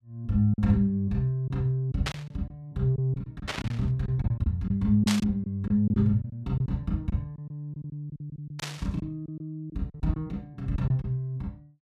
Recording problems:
lost packets; 9% of the sound replaced, filled with silence
burst of static; 4 times, first at 2 s; peak +3 dB vs average level

